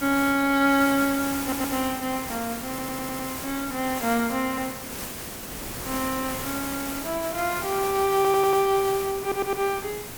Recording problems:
background hiss; slope -3 dB per octave, SNR 7 dB
wind on the microphone; below 430 Hz, SNR 20 dB
audio stuttering; 4 times, first at 1.5 s

